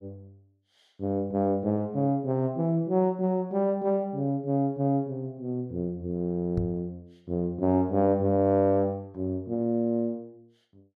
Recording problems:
knock on the microphone; at 6.5 s; peak +1 dB vs average level

